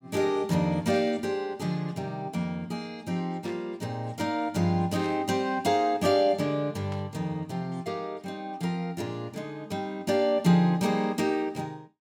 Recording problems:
burst of static; 4 times, first at 1 s; peak -13 dB vs average level

